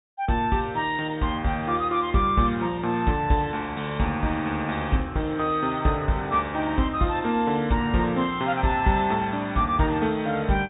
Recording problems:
treble cut off; nothing above 4 kHz

